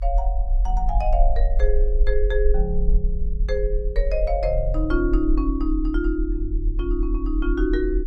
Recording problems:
low-frequency rumble; below 44 Hz, SNR -1 dB

